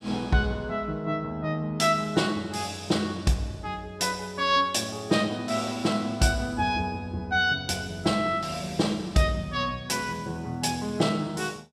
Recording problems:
none

